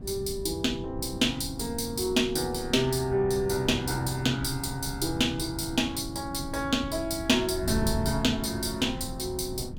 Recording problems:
wind on the microphone; below 170 Hz, SNR 10 dB

